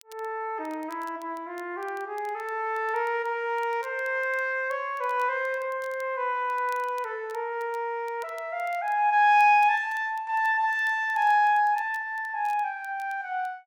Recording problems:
crackling; vinyl, SNR 30 dB

